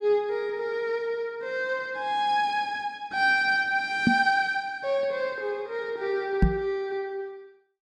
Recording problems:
microphone thump; at 4 s and at 6.5 s; peak +9 dB vs average level

